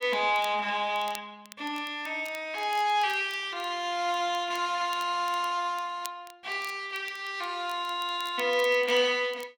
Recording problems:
crackling; vinyl, SNR 20 dB

